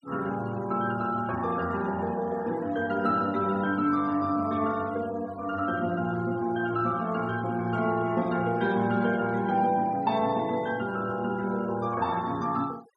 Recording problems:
denoising artefacts; signal-to-artefact ratio 21 dB

